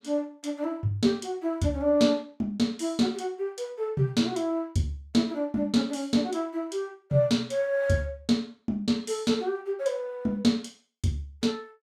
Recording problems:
none

